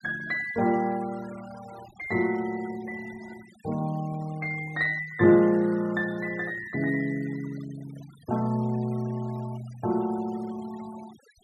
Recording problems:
denoising artefacts; signal-to-artefact ratio 22 dB

